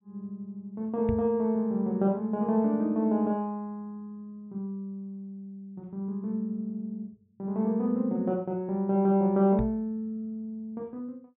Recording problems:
low-pass filter; nothing above 4 kHz
knock on the microphone; at 1 s and at 9.5 s; peak 0 dB vs average level

